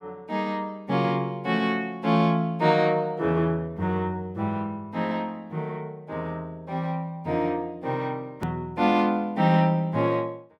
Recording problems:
click at an edit; at 8.5 s

